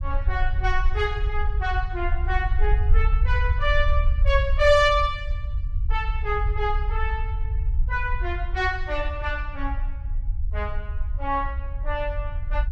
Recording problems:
rumble; below 64 Hz, SNR 1 dB

